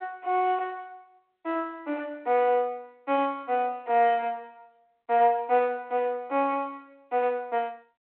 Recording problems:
phone line; 280 Hz to 3.3 kHz, G.726

